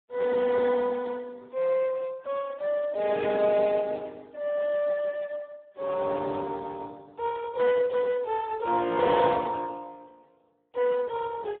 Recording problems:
phone line; 190 Hz to 3.4 kHz, Speex

